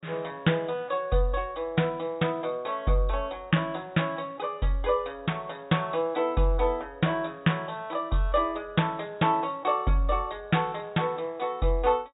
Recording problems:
low-pass filter; nothing above 4 kHz

